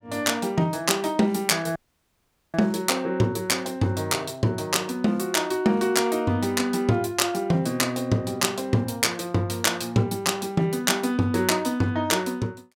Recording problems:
dropout; at 2 s for 1 s

